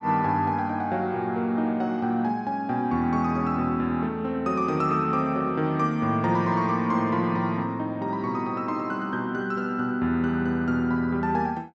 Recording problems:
none

